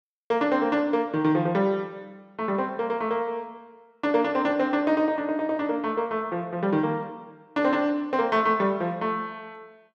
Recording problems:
none

